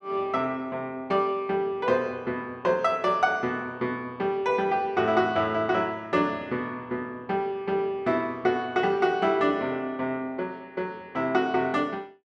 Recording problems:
none

